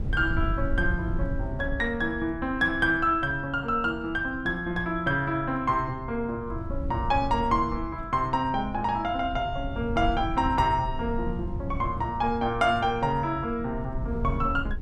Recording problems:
wind on the microphone; below 100 Hz, SNR 9 dB

